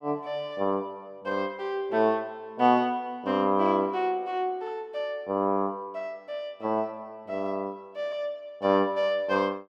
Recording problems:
none

